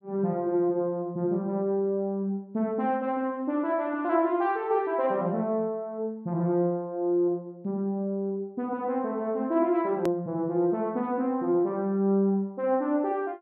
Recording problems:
click at an edit; at 10 s

